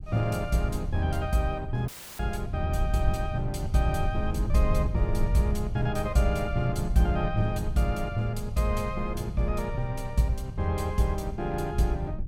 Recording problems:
low-frequency rumble; below 96 Hz, SNR 5 dB
audio cutting out; at 2 s; filled with static

